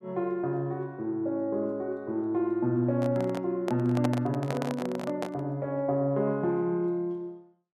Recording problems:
microphone handling noise; from 3 to 5.5 s; peak +1 dB vs average level

